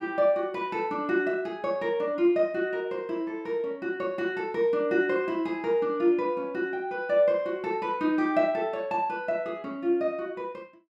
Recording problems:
none

